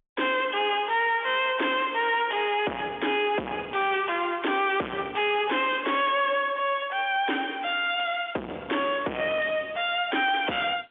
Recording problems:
phone line; 260 Hz to 3.5 kHz, G.711
distortion; soft clipping, signal-to-distortion ratio 6 dB

